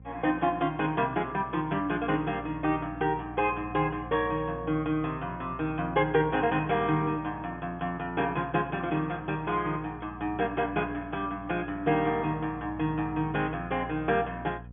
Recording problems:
treble missing; nothing above 3.3 kHz
mains hum; 60 Hz, harmonics up to 540 Hz, SNR 17 dB

